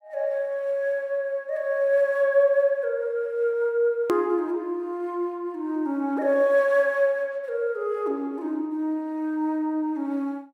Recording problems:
hard cut with a click; at 4 s

